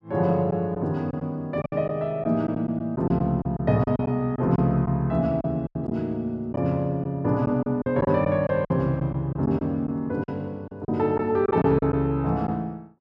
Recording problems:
lost packets; 8% of the sound replaced, filled with silence

